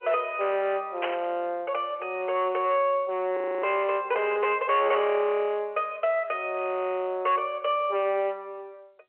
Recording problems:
phone line; 300 Hz to 3.2 kHz, G.711
distortion; hard clipping, signal-to-distortion ratio 11 dB
burst of static; at 1 s; peak 0 dB vs average level
audio freezing; at 3.5 s

